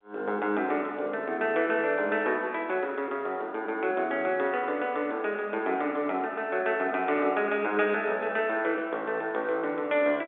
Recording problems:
phone line; 240 Hz to 3.6 kHz, G.711

